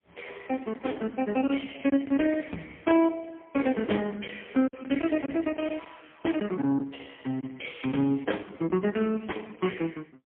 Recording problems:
telephone audio; 150 Hz to 3.3 kHz, AMR-NB, then MP3
lost packets; 3% of the sound replaced, filled with silence

